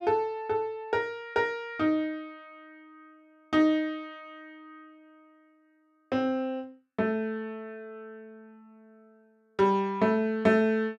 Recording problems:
none

